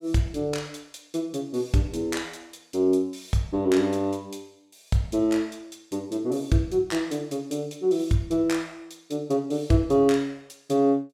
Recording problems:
none

